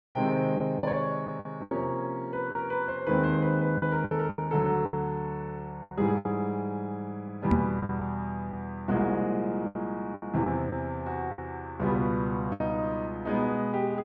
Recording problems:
packet loss; 8% of the sound replaced, filled with the last packet
microphone thump; at 7.5 s; peak +7 dB vs average level

